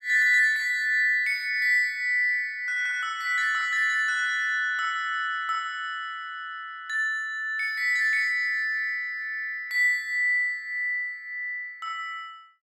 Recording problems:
none

